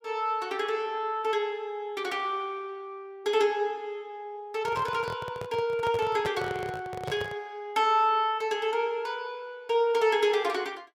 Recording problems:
handling noise; from 4.5 to 7.5 s; peak -3 dB vs average level

